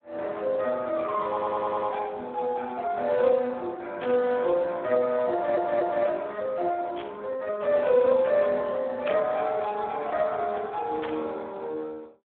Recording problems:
phone line; 280 Hz to 3.6 kHz, Speex
stutter; at 1.5 s and at 5.5 s
static burst; 4 times, first at 4 s; peak -4 dB vs average level

